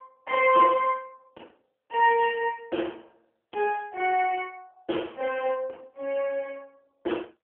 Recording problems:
phone line; 260 Hz to 3.1 kHz, AMR-NB

